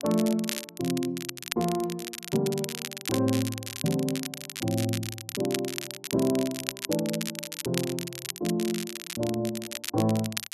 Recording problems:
crackling; vinyl, SNR 6 dB

